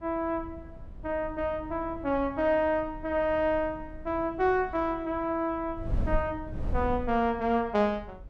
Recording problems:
wind noise; below 94 Hz, SNR 12 dB

